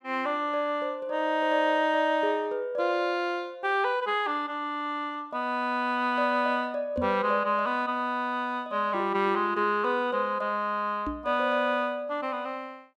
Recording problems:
knock on the microphone; at 7 s and at 11 s; peak -1 dB vs average level

